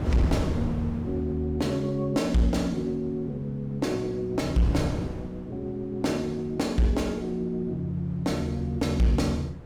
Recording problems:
distortion; hard clipping, signal-to-distortion ratio 12 dB
wind on the microphone; below 260 Hz, SNR 10 dB

